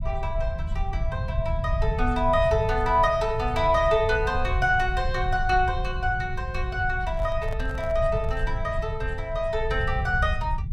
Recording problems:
rumble; below 92 Hz, SNR 5 dB
microphone handling noise; from 7 to 8.5 s; peak -11 dB vs average level

